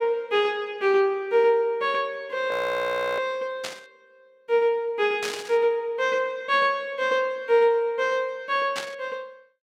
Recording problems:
audio freezing; at 2.5 s for 0.5 s
burst of static; at 3.5 s, at 5 s and at 9 s; peak -2 dB vs average level

